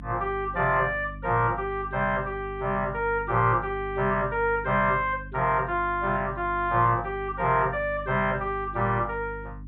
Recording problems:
treble cut off; nothing above 4 kHz
hum; 50 Hz, harmonics up to 300 Hz, SNR 15 dB

